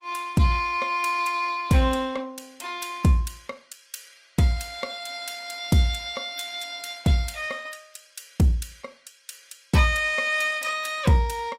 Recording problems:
lossy codec; Opus, log-spectral distance 4 dB, nothing above 16 kHz

